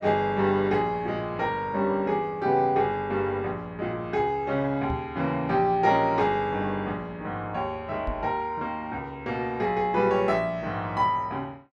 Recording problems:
knock on the microphone; at 5 s and at 8 s; peak -3 dB vs average level

